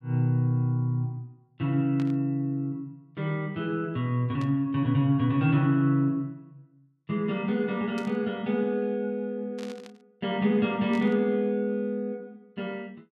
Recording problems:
static burst; 5 times, first at 2 s; peak -13 dB vs average level

